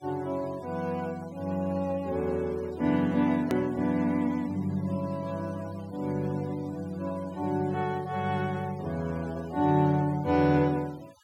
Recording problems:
noise reduction artefacts; signal-to-artefact ratio 23 dB
edit click; at 3.5 s

